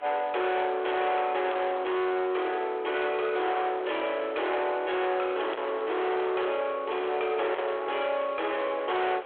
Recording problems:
phone line; 390 Hz to 3.4 kHz, G.726
distorted audio; hard clipping, signal-to-distortion ratio 7 dB
hiss; SNR 23 dB
wind on the microphone; below 1.8 kHz, SNR 21 dB

